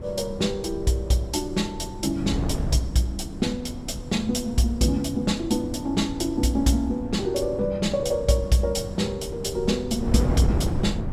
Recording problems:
wind noise; below 220 Hz, SNR 8 dB

